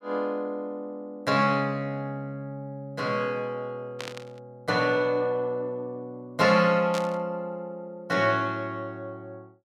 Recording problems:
static burst; at 4 s and at 7 s; peak -4 dB vs average level

